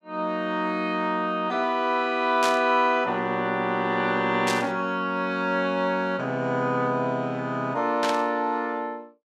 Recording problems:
static burst; at 2.5 s, at 4.5 s and at 8 s; peak 0 dB vs average level

